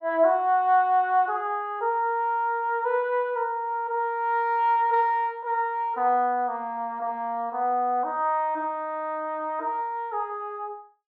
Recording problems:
none

